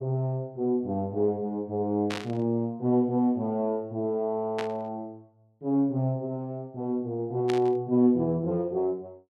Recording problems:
static burst; at 2 s, at 4.5 s and at 7.5 s; peak -3 dB vs average level

